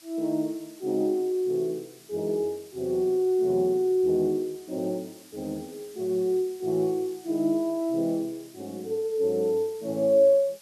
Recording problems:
background hiss; slope +2 dB per octave, SNR 24 dB

